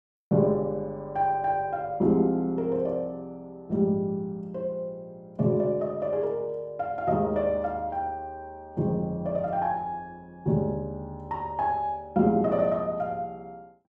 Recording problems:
none

